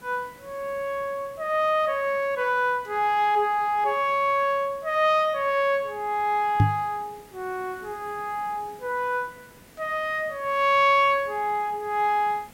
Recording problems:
background hiss; slope -4 dB per octave, SNR 26 dB
microphone bump; at 6.5 s; peak +8 dB vs average level

